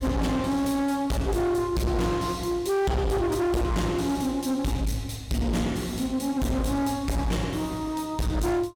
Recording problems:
distortion; hard clipping, uneven, signal-to-distortion ratio 6 dB

